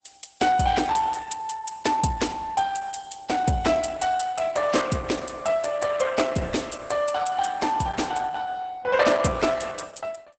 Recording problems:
codec artefacts; Opus, log-spectral distance 5 dB, nothing above 8 kHz

